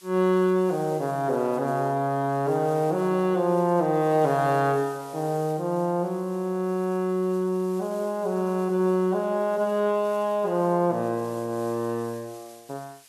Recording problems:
background hiss; slope +2 dB per octave, SNR 25 dB

